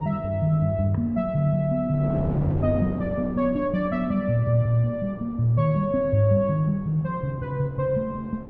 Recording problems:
wind noise; below 410 Hz, SNR 13 dB

